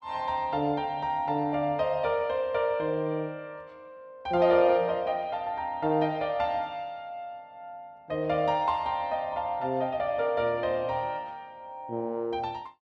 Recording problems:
none

